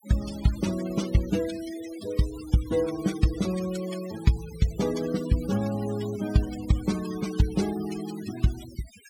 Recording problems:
denoising artefacts; signal-to-artefact ratio 14 dB

